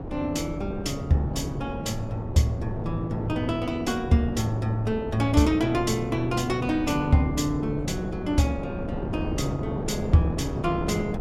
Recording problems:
wind noise; below 400 Hz, SNR 7 dB

